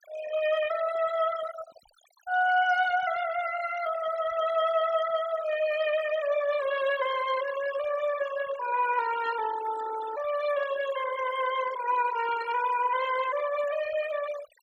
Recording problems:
denoising artefacts; signal-to-artefact ratio 12 dB

